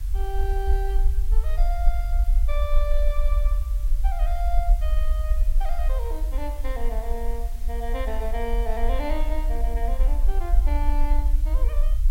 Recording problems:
hiss; slope 0 dB per octave, SNR 15 dB
rumble; below 48 Hz, SNR -8 dB

